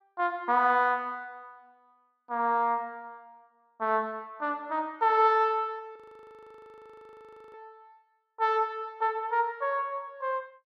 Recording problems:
frozen audio; at 6 s for 1.5 s

